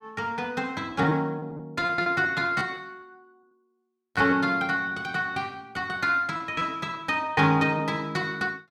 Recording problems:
packet loss; 6% of the sound replaced, filled with repeated pitch periods

